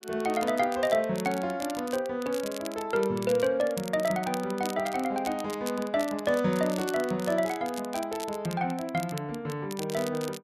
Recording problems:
crackling; vinyl, SNR 14 dB

